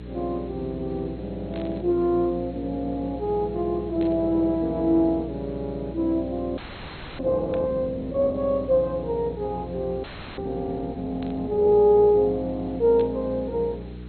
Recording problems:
codec artefacts; MP2, log-spectral distance 5 dB
electrical hum; 60 Hz, harmonics up to 480 Hz, SNR 14 dB
background hiss; SNR 29 dB
static burst; 5 times, first at 1.5 s; peak -13 dB vs average level
audio freezing; at 6.5 s for 0.5 s and at 10 s

